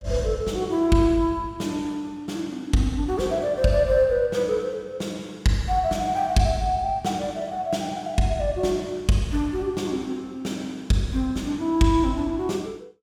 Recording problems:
none

